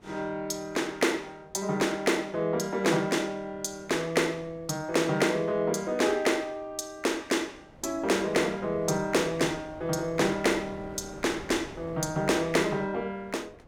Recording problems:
wind on the microphone; below 660 Hz, SNR 21 dB

